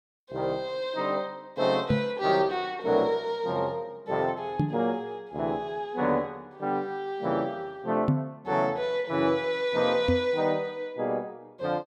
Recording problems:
knock on the microphone; 4 times, first at 2 s; peak +7 dB vs average level

